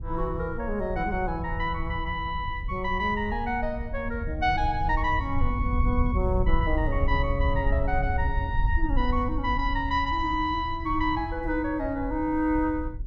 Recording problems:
low-frequency rumble; below 74 Hz, SNR 4 dB

